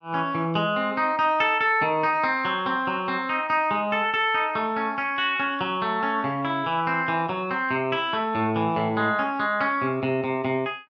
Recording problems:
none

